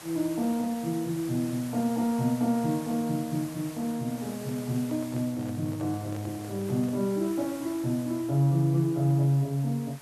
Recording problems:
hiss; SNR 17 dB
handling noise; from 4 to 7 s; peak -11 dB vs average level

